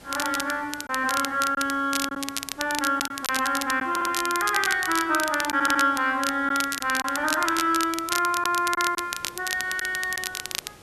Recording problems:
background hiss; slope -4 dB per octave, SNR 23 dB
crackle; vinyl, SNR 7 dB
lost packets; 3% of the sound replaced, filled with silence
audio stuttering; at 4 s and at 5.5 s

